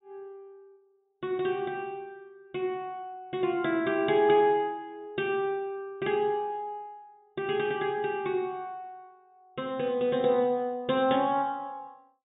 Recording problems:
treble cut off; nothing above 4 kHz

